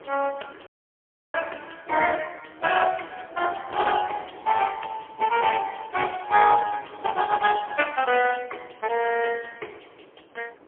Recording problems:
phone line; 260 Hz to 2.6 kHz, AMR-NB, then MP3
wind noise; below 990 Hz, SNR 23 dB
dropout; at 0.5 s for 0.5 s

